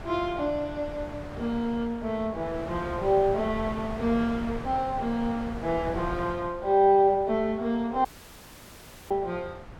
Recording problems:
wind noise; below 740 Hz, SNR 13 dB
audio cutting out; at 8 s for 1 s

